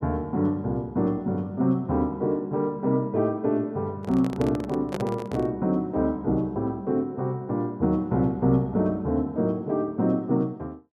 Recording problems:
handling noise; from 4 to 5.5 s; peak -2 dB vs average level

